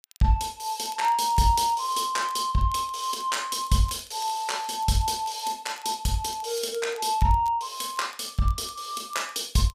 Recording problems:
crackle; vinyl, SNR 23 dB

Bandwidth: 15 kHz